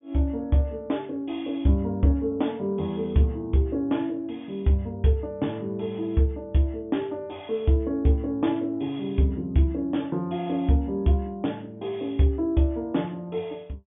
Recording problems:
treble cut off; nothing above 3.5 kHz

